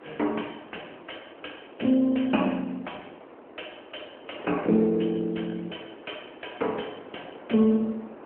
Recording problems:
telephone audio; 240 Hz to 3.2 kHz, AMR-NB
wind noise; below 880 Hz, SNR 19 dB

